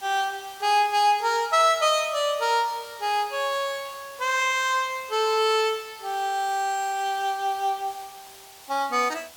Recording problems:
hiss; SNR 20 dB

